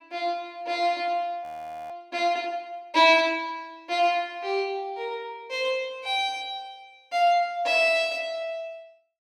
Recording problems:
frozen audio; at 1.5 s

